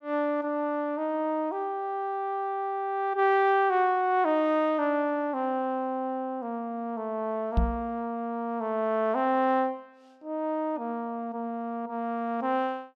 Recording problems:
microphone bump; at 7.5 s; peak +6 dB vs average level

